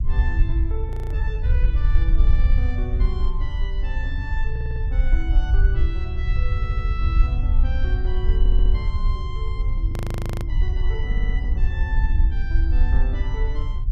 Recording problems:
rumble; below 62 Hz, SNR -12 dB
audio freezing; at 1 s and at 10 s for 0.5 s
stutter; 4 times, first at 4.5 s

